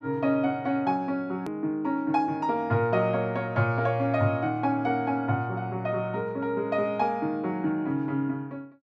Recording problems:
edit click; at 1.5 s

